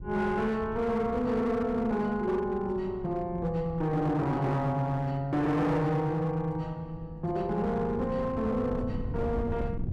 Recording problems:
distortion; hard clipping, signal-to-distortion ratio 10 dB
wind noise; below 170 Hz, SNR 12 dB

